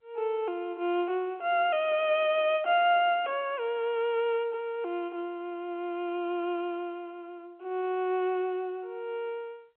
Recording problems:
phone line; 300 Hz to 3.2 kHz, G.711

